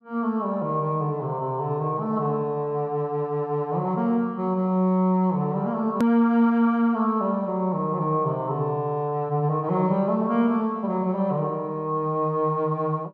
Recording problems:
click at an edit; at 6 s

